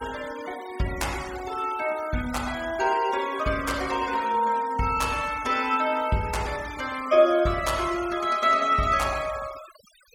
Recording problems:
noise reduction artefacts; signal-to-artefact ratio 17 dB

